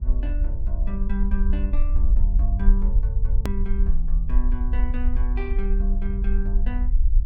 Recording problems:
low-frequency rumble; below 48 Hz, SNR -10 dB
hard cut with a click; at 3.5 s

